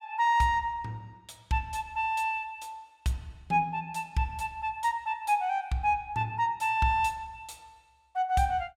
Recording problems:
none

